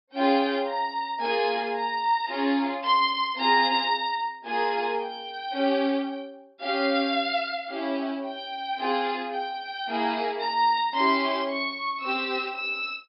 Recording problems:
treble missing; nothing above 5.3 kHz

